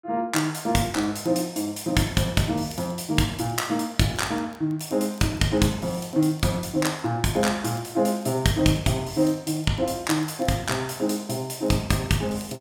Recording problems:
crackle; vinyl, SNR 30 dB

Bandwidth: 17 kHz